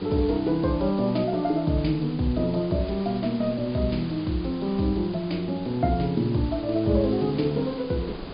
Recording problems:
treble missing; nothing above 5 kHz
hiss; SNR 18 dB
wind on the microphone; below 420 Hz, SNR 23 dB

